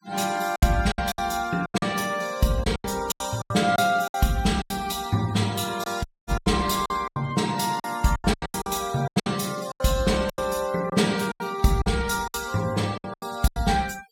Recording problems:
noise reduction artefacts; signal-to-artefact ratio 18 dB
packet loss; 14% of the sound replaced, filled with silence
audio cutting out; at 6 s

